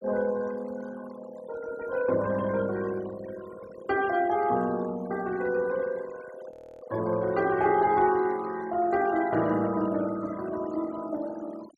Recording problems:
noise reduction artefacts; signal-to-artefact ratio 18 dB
frozen audio; at 6.5 s

